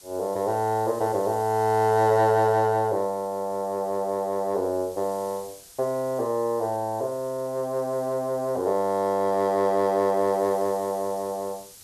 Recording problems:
hiss; SNR 22 dB

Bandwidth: 13 kHz